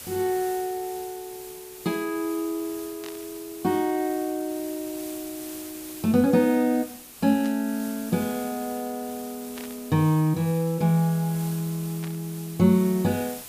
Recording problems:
hiss; slope -1 dB per octave, SNR 15 dB
static burst; 4 times, first at 3 s; peak -12 dB vs average level

